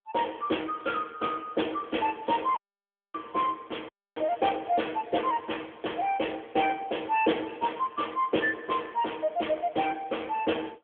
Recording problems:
telephone audio; 280 Hz to 3.4 kHz, AMR-NB
dropout; at 2.5 s for 0.5 s and at 4 s

